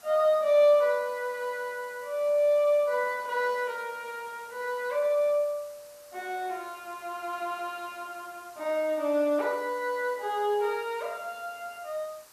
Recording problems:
hiss; SNR 24 dB

